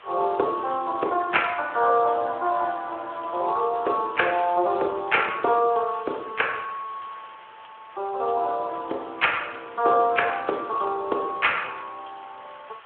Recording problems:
phone line; 320 Hz to 3.4 kHz, Speex
background hiss; SNR 22 dB

